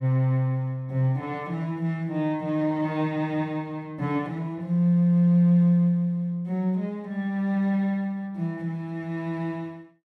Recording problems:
none

